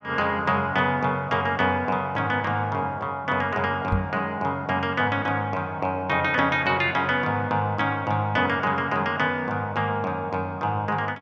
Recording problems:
microphone bump; at 4 s; peak +3 dB vs average level

